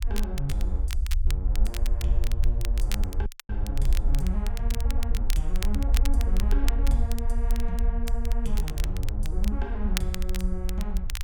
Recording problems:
low-frequency rumble; below 56 Hz, SNR -7 dB
crackling; vinyl, SNR 5 dB
audio cutting out; at 3.5 s

